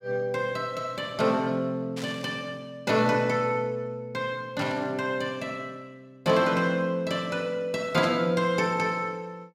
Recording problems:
static burst; at 2 s, at 4.5 s and at 8 s; peak -6 dB vs average level

